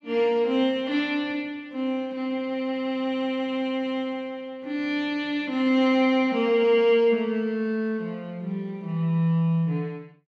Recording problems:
none

